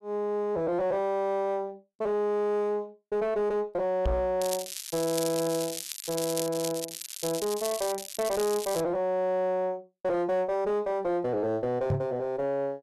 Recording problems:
distortion; soft clipping, signal-to-distortion ratio 11 dB
microphone bump; at 4 s and at 12 s; peak +5 dB vs average level
crackling; from 4.5 to 9 s; loose cable, SNR 7 dB

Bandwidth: 12.5 kHz